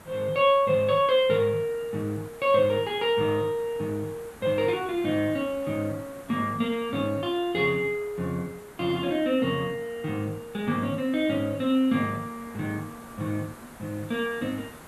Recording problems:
hiss; SNR 20 dB

